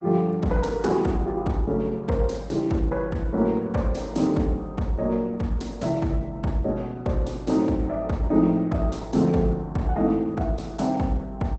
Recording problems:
lossy codec; Opus, log-spectral distance 2 dB, nothing above 8 kHz

